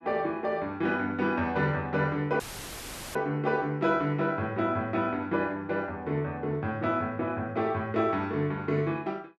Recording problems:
dropout; at 2.5 s for 1 s; filled with static

